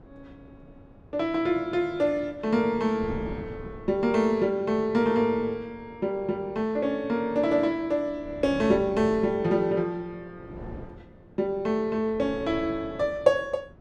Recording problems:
wind noise; below 370 Hz, SNR 19 dB

